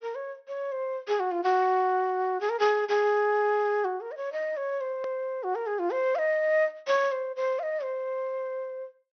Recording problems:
low-pass filter; nothing above 6.1 kHz
click at an edit; at 5 s

